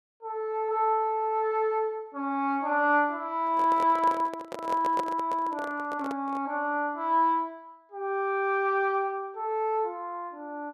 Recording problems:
microphone handling noise; from 3.5 to 6.5 s; peak -2 dB vs average level

